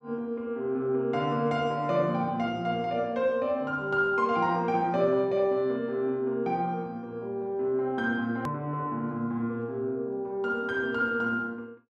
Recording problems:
hard cut with a click; at 8.5 s

